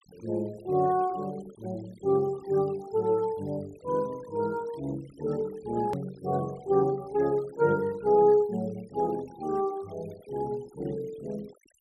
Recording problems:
noise reduction artefacts; signal-to-artefact ratio 25 dB
hard cut with a click; at 6 s

